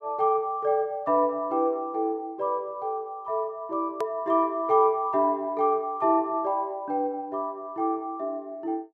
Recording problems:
hard cut with a click; at 4 s

